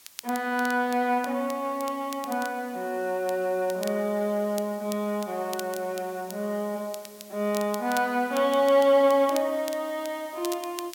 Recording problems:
hiss; slope +1 dB per octave, SNR 22 dB
crackling; vinyl, SNR 17 dB

